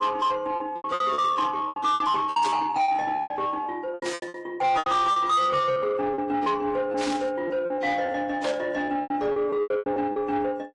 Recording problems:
lossy compression; MP3, then AAC, log-spectral distance 2 dB
distortion; soft clipping, signal-to-distortion ratio 11 dB
lost packets; 16% of the sound replaced, filled with repeated pitch periods
static burst; 4 times, first at 2.5 s; peak -4 dB vs average level

